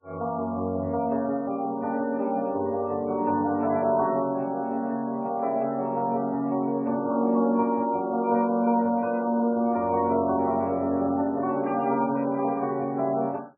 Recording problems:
codec artefacts; MP3, log-spectral distance 2 dB, nothing above 2.4 kHz

